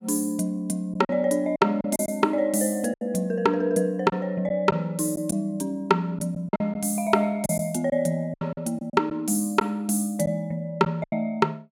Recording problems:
packet loss; 7% of the sound replaced, filled with silence

